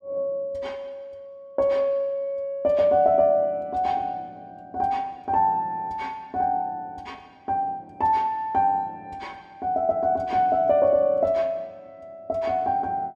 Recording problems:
none

